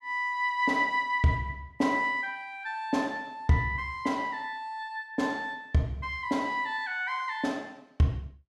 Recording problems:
none

